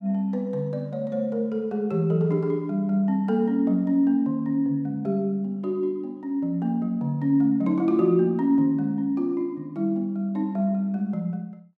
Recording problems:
none

